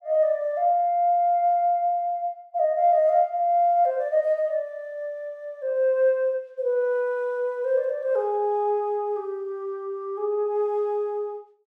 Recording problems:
none

